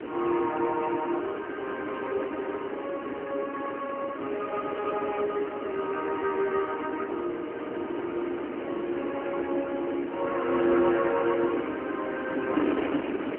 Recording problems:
phone line; 240 Hz to 3.1 kHz, AMR-NB
wind on the microphone; below 580 Hz, SNR 5 dB

